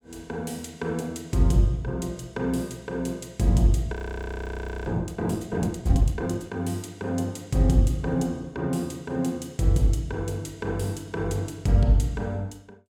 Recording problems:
frozen audio; at 4 s for 1 s

